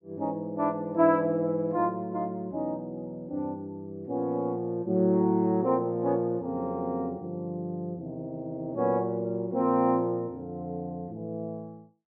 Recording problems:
none

